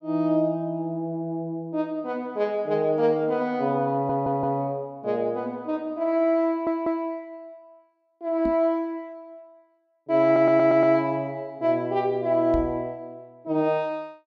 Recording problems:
stutter; at 4 s, at 6.5 s and at 10 s
knock on the microphone; at 8.5 s and at 13 s; peak -4 dB vs average level

